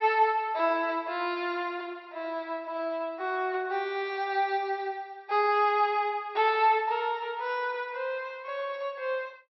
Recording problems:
low-pass filter; nothing above 5.8 kHz

